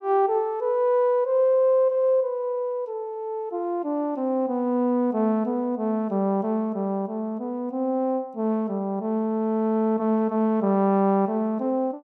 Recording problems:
none

